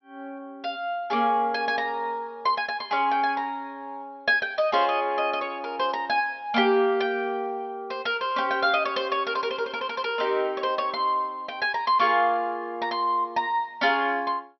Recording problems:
treble cut off; nothing above 5.8 kHz

